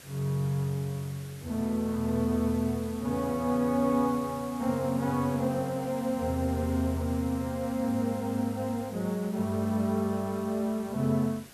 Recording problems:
hiss; slope -2 dB per octave, SNR 19 dB

